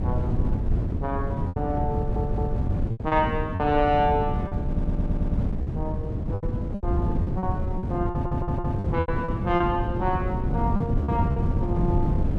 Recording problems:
wind on the microphone; below 180 Hz, SNR -1 dB
packet loss; 8% of the sound replaced, filled with repeated pitch periods
stutter; at 2 s, at 4.5 s and at 8 s

